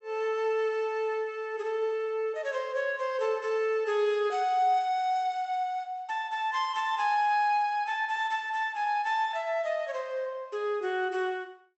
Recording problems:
low-pass filter; nothing above 7.9 kHz

